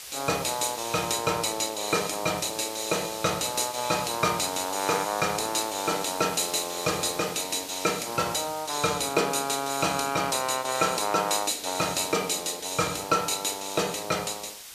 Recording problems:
background hiss; slope +2 dB per octave, SNR 11 dB

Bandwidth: 14.5 kHz